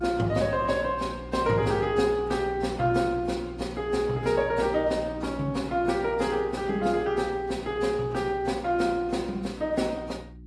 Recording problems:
lossy compression; AAC, log-spectral distance 2 dB
hum; 60 Hz, harmonics up to 360 Hz, SNR 16 dB

